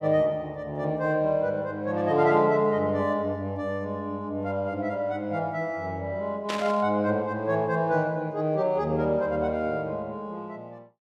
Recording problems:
static burst; at 6.5 s; peak -2 dB vs average level

